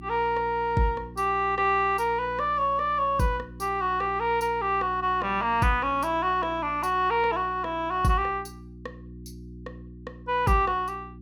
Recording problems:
hum; 60 Hz, harmonics up to 360 Hz, SNR 18 dB

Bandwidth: 18 kHz